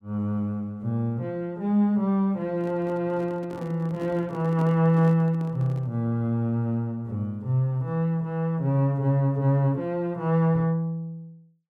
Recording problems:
microphone handling noise; from 2.5 to 6 s; peak -9 dB vs average level

